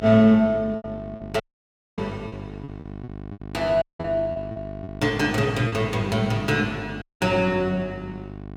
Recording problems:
hum; 50 Hz, harmonics up to 1.1 kHz, SNR 14 dB
lost packets; 5% of the sound replaced, filled with repeated pitch periods
audio cutting out; at 1.5 s for 0.5 s, at 4 s and at 7 s

